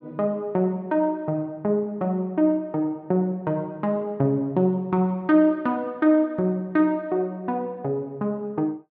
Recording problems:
none

